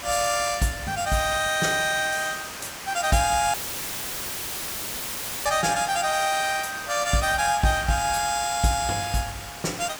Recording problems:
background hiss; slope -1 dB per octave, SNR 12 dB
dropout; at 3.5 s for 2 s; filled with static

